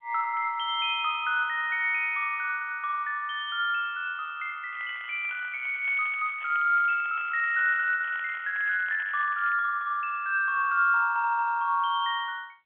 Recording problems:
phone line; 130 Hz to 3.5 kHz, G.711
crackling; from 4.5 to 8 s and from 8 to 9.5 s; loose cable, SNR 22 dB

